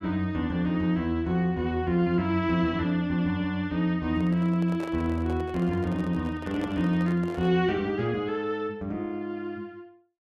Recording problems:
handling noise; from 4 to 7.5 s; peak -7 dB vs average level

